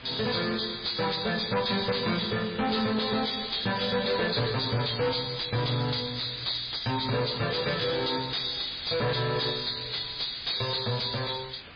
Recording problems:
lossy codec; MP3, log-spectral distance 18 dB, nothing above 4.8 kHz
distortion; soft clipping, signal-to-distortion ratio 5 dB
hiss; SNR 17 dB

